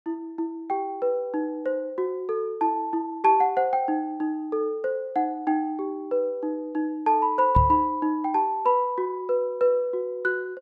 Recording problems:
microphone thump; at 7.5 s; peak +5 dB vs average level

